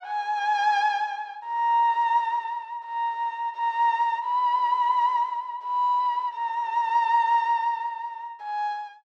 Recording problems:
none

